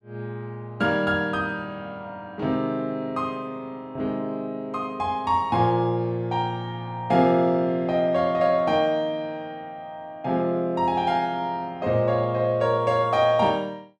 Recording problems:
none

